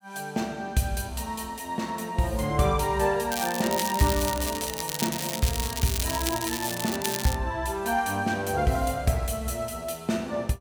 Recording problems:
crackle; from 3.5 to 7.5 s; loose cable, SNR 4 dB

